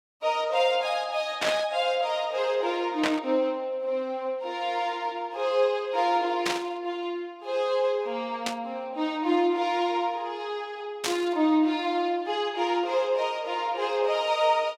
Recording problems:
static burst; 5 times, first at 1.5 s; peak +3 dB vs average level

